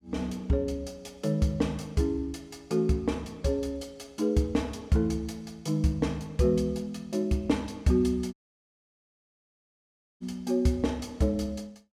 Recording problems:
audio cutting out; at 8.5 s for 2 s

